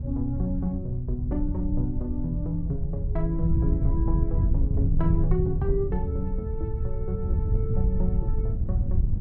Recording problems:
wind on the microphone; below 92 Hz, SNR -3 dB

